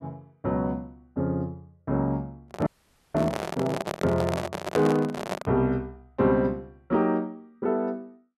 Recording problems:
handling noise; from 2.5 to 5.5 s; peak +4 dB vs average level
audio freezing; at 2.5 s

